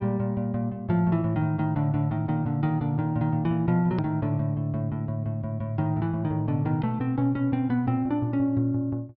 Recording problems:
treble cut off; nothing above 5.5 kHz
click at an edit; at 4 s

